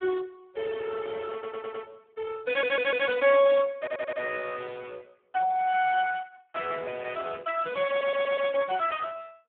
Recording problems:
phone line; 260 Hz to 2.6 kHz, Speex
audio stuttering; 4 times, first at 1.5 s

